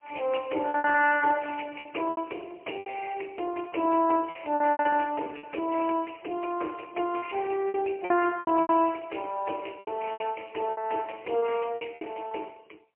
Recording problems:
telephone audio; 260 Hz to 2.8 kHz, AMR-NB, then MP3
lost packets; 12% of the sound replaced, filled with repeated pitch periods

